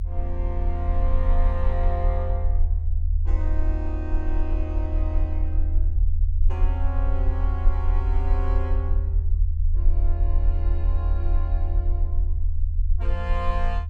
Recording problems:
rumble; below 76 Hz, SNR -10 dB

